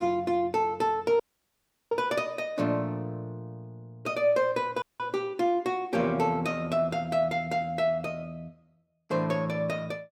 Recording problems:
audio cutting out; at 1 s for 0.5 s and at 5 s

